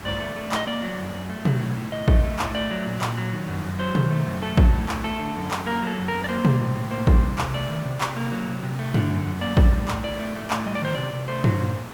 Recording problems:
background hiss; SNR 13 dB

